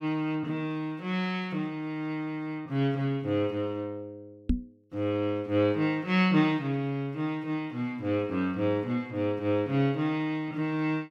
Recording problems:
microphone thump; at 4.5 s; peak +6 dB vs average level

